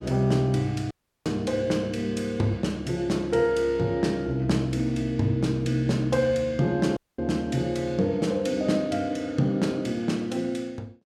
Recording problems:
audio cutting out; at 1 s and at 7 s

